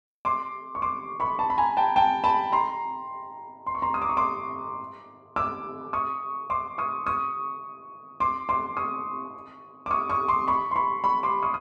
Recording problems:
none

